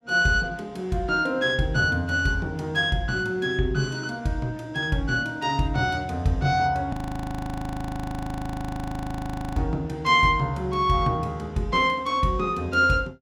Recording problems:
frozen audio; at 7 s for 2.5 s

